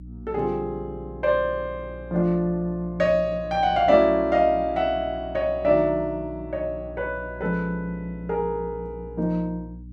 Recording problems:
hum; 60 Hz, harmonics up to 300 Hz, SNR 16 dB

